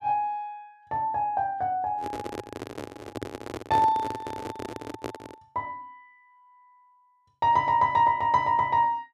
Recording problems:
microphone handling noise; from 2 to 5.5 s; peak -4 dB vs average level

